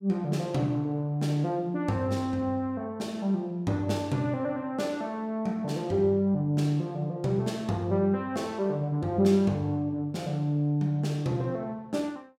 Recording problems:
none

